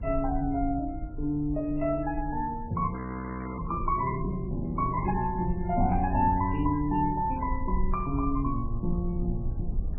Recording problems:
lossy codec; MP3, log-spectral distance 2 dB, nothing above 2.7 kHz
low-frequency rumble; below 70 Hz, SNR 7 dB
frozen audio; at 3 s for 0.5 s
crackling; at 6.5 s; loose cable, SNR 20 dB

